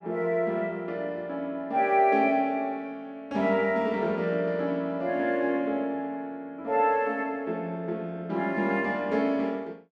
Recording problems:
none

